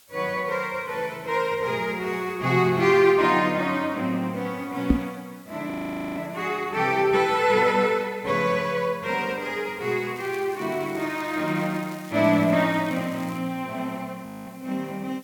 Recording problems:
hiss; slope +1 dB per octave, SNR 27 dB
microphone thump; at 5 s; peak +7 dB vs average level
audio freezing; at 5.5 s and at 14 s
crackling; from 10 to 13 s; loose cable, SNR 23 dB

